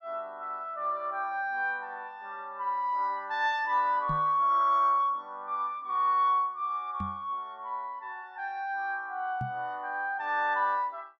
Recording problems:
microphone thump; at 4 s, at 7 s and at 9.5 s; peak -3 dB vs average level

